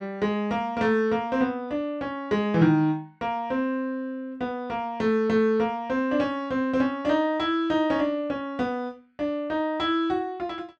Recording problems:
none

